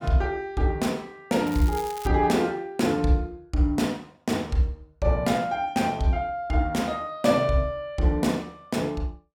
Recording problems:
crackle; at 1.5 s; loose cable, SNR 17 dB

